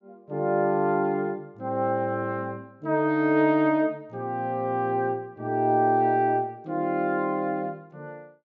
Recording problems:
low-pass filter; nothing above 8 kHz

